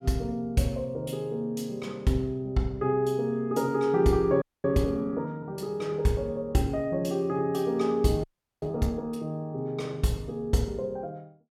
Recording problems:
audio freezing; at 4.5 s and at 8 s

